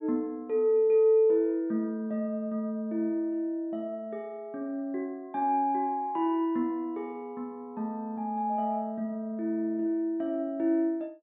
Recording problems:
low-pass filter; nothing above 4 kHz

